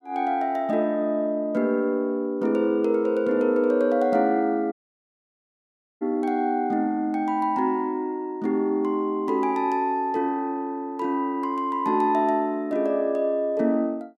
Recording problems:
audio cutting out; at 4.5 s for 1.5 s

